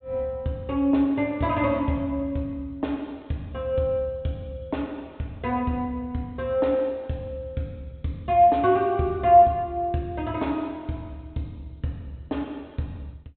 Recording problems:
treble missing; nothing above 4 kHz

